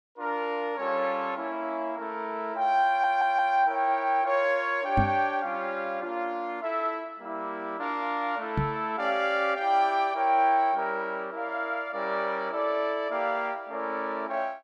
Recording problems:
audio stuttering; at 3 s
knock on the microphone; at 5 s and at 8.5 s; peak +4 dB vs average level

